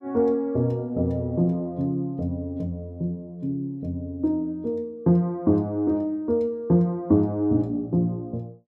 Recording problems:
none

